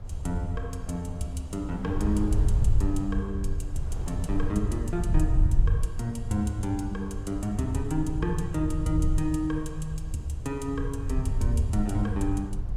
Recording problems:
low-frequency rumble; below 84 Hz, SNR 0 dB
wind on the microphone; below 530 Hz, SNR 16 dB

